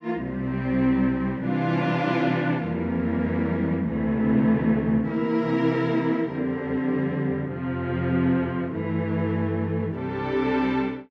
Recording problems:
none

